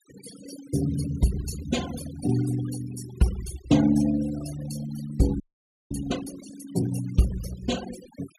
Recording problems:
denoising artefacts; signal-to-artefact ratio 13 dB
audio freezing; at 5.5 s for 0.5 s

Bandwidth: 14.5 kHz